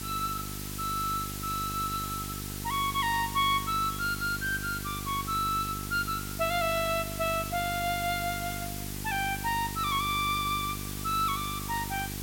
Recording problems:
hum; 50 Hz, harmonics up to 850 Hz, SNR 9 dB
background hiss; slope +1 dB per octave, SNR 7 dB

